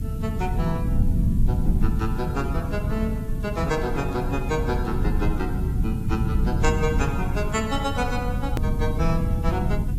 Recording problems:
codec artefacts; AAC, log-spectral distance 2 dB
background hiss; slope 0 dB per octave, SNR 22 dB
low-frequency rumble; below 150 Hz, SNR -3 dB
edit click; at 8.5 s

